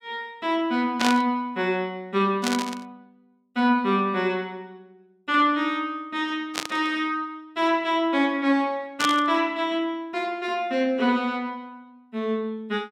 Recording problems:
static burst; 4 times, first at 1 s; peak +4 dB vs average level

